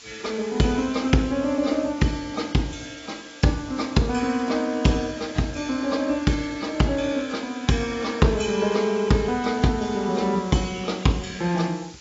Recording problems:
treble missing; nothing above 7.3 kHz
codec artefacts; AAC, log-spectral distance 8 dB
background hiss; slope +2 dB per octave, SNR 20 dB

